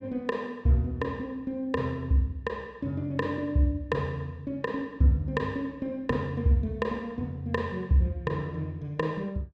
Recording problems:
none

